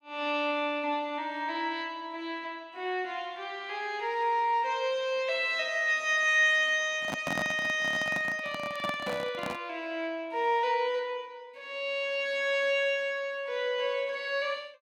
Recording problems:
handling noise; from 7 to 9.5 s; peak -1 dB vs average level

